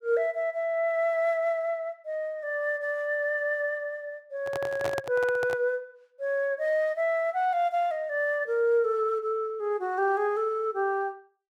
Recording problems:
handling noise; from 4.5 to 5.5 s; peak -2 dB vs average level

